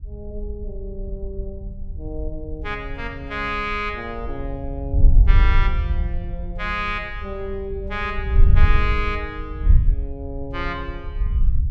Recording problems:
wind on the microphone; below 66 Hz, SNR -5 dB

